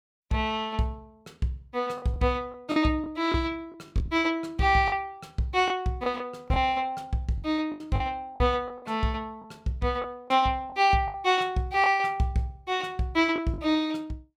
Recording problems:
lost packets; 6% of the sound replaced, filled with the last packet

